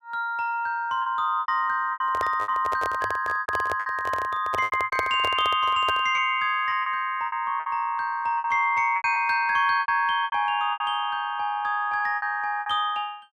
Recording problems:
lost packets; 11% of the sound replaced, filled with repeated pitch periods
handling noise; from 2 to 6 s; peak -1 dB vs average level

